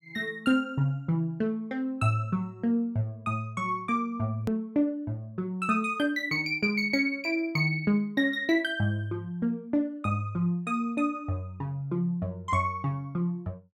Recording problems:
hard cut with a click; at 4.5 s

